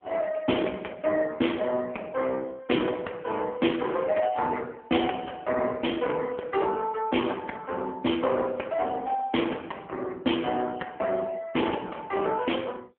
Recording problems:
phone line; 260 Hz to 3.3 kHz, AMR-NB

